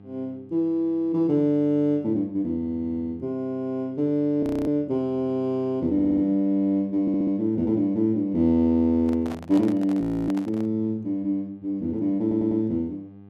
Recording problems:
hum; 50 Hz, harmonics up to 900 Hz, SNR 25 dB
frozen audio; at 4.5 s and at 10 s
audio stuttering; at 6 s, at 7 s and at 12 s
handling noise; from 9 to 11 s; peak -7 dB vs average level

